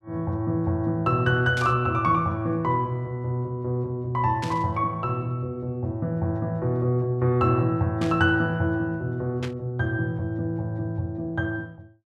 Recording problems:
burst of static; 4 times, first at 1.5 s; peak -6 dB vs average level

